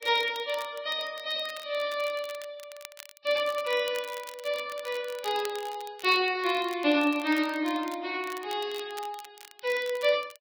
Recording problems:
codec artefacts; Vorbis, log-spectral distance 3 dB
crackling; vinyl, SNR 18 dB

